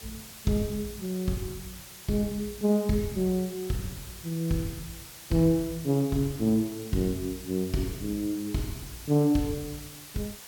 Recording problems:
hiss; slope 0 dB per octave, SNR 14 dB

